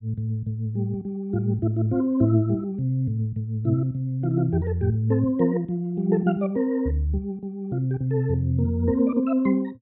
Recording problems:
low-pass filter; nothing above 4 kHz

